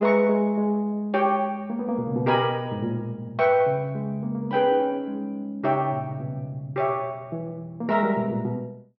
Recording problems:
low-pass filter; nothing above 5.6 kHz

